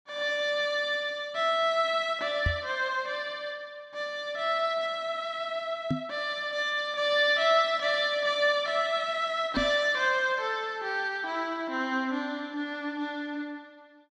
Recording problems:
knock on the microphone; at 2.5 s, at 6 s and at 9.5 s; peak +3 dB vs average level

